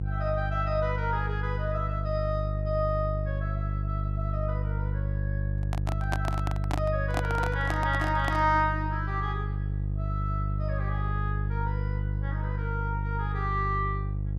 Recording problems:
electrical hum; 50 Hz, harmonics up to 350 Hz, SNR -1 dB
handling noise; from 5.5 to 8.5 s; peak +4 dB vs average level

